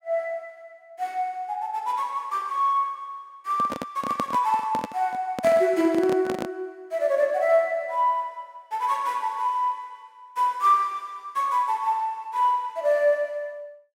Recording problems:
handling noise; from 3.5 to 6.5 s; peak -1 dB vs average level

